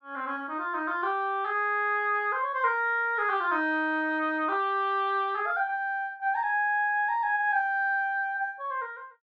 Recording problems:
none

